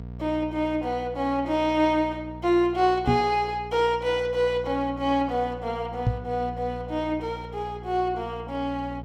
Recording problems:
electrical hum; 60 Hz, harmonics up to 720 Hz, SNR 15 dB
knock on the microphone; at 3 s and at 6 s; peak +6 dB vs average level

